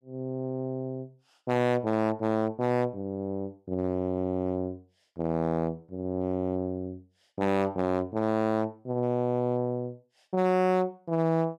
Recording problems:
distorted audio; hard clipping, uneven, signal-to-distortion ratio 11 dB

